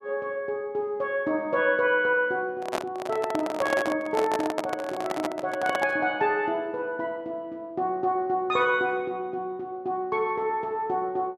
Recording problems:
handling noise; from 2.5 to 6 s; peak +2 dB vs average level

